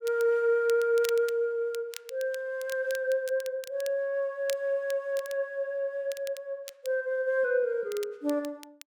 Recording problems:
crackling; vinyl, SNR 17 dB

